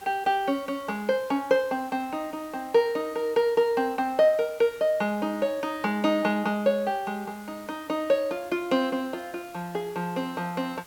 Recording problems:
background hiss; slope -2 dB per octave, SNR 23 dB

